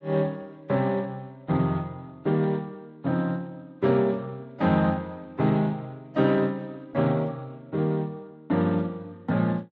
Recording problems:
codec artefacts; Speex, then AAC, log-spectral distance 2 dB

